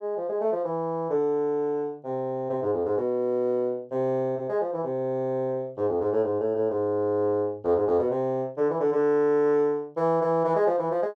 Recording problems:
none

